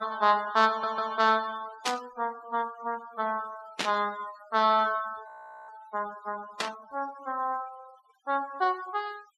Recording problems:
denoising artefacts; signal-to-artefact ratio 20 dB
stutter; at 0.5 s
static burst; at 2 s, at 4 s and at 6.5 s; peak +4 dB vs average level
audio freezing; at 5.5 s

